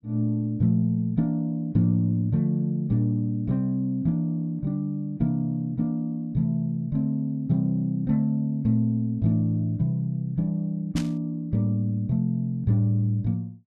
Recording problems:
burst of static; at 11 s; peak -6 dB vs average level

